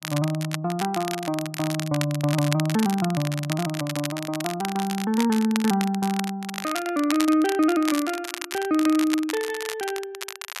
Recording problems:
crackle; vinyl, SNR 9 dB

